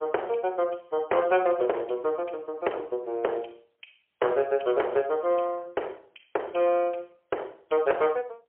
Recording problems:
phone line; 320 Hz to 3.2 kHz, AMR-NB, then MP3
distortion; hard clipping, signal-to-distortion ratio 12 dB

